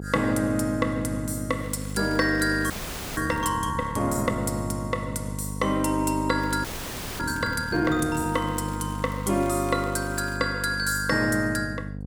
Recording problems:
mains hum; 50 Hz, harmonics up to 550 Hz, SNR 8 dB
crackling; from 1.5 to 3.5 s and from 6.5 to 10 s; loose cable, SNR 23 dB
audio freezing; at 2.5 s and at 6.5 s for 0.5 s

